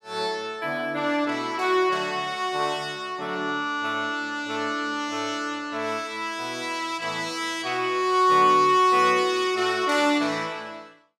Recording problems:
none

